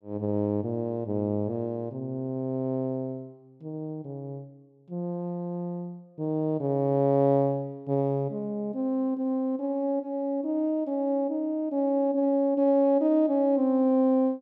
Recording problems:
none

